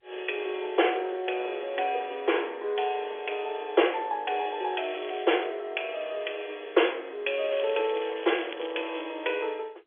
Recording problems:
phone line; 300 Hz to 3.4 kHz, G.711
crackle; at 5 s and from 7.5 to 9 s; loose cable, SNR 15 dB

